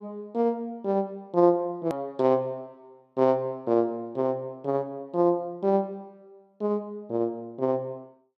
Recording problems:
click at an edit; at 2 s

